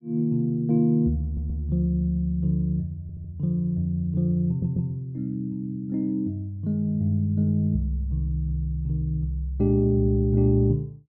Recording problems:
stutter; at 1 s, at 3 s and at 4.5 s

